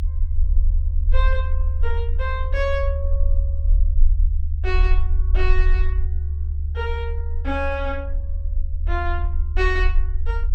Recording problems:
low-frequency rumble; below 72 Hz, SNR -6 dB

